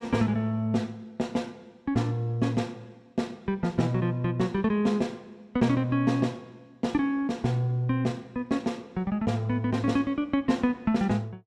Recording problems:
none

